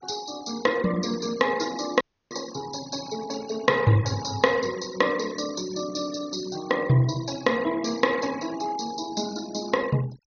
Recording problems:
low-pass filter; nothing above 6.7 kHz
noise reduction artefacts; signal-to-artefact ratio 16 dB
audio cutting out; at 2 s

